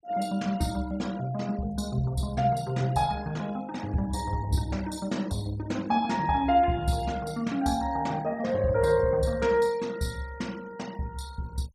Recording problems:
noise reduction artefacts; signal-to-artefact ratio 21 dB

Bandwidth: 14.5 kHz